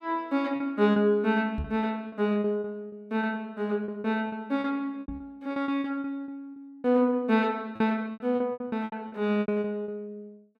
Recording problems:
packet loss; 14% of the sound replaced, filled with repeated pitch periods
microphone thump; at 1.5 s and at 5 s; peak -1 dB vs average level

